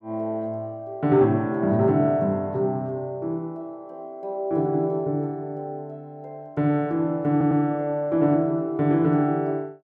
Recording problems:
audio stuttering; at 7.5 s

